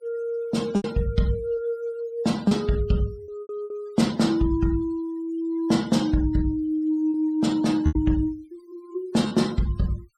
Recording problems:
denoising artefacts; signal-to-artefact ratio 22 dB
lost packets; 5% of the sound replaced, filled with repeated pitch periods

